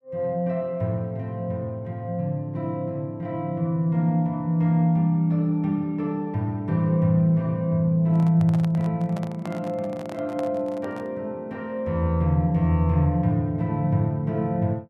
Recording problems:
handling noise; from 8 to 11 s; peak -9 dB vs average level

